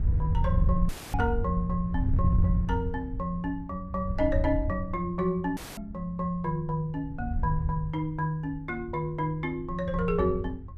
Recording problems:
wind on the microphone; below 96 Hz, SNR 1 dB
audio cutting out; at 1 s and at 5.5 s

